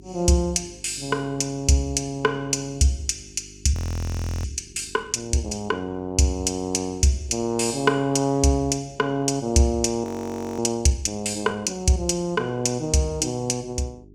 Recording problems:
mains hum; 50 Hz, harmonics up to 400 Hz, SNR 25 dB
frozen audio; at 3.5 s for 0.5 s and at 10 s for 0.5 s

